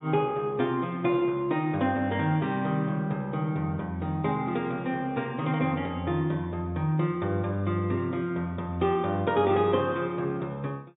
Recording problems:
treble cut off; nothing above 4 kHz

